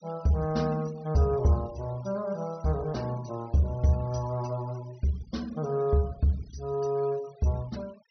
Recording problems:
low-pass filter; nothing above 6.1 kHz
denoising artefacts; signal-to-artefact ratio 24 dB

